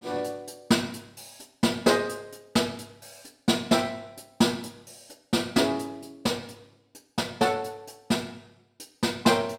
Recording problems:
none

